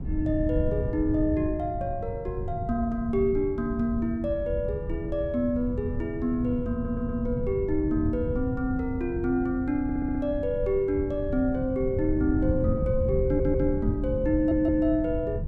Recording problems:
wind noise; below 130 Hz, SNR 6 dB
audio stuttering; 4 times, first at 6.5 s

